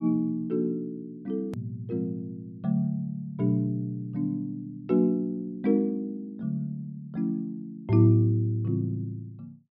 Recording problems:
treble missing; nothing above 5.4 kHz
hard cut with a click; at 1.5 s

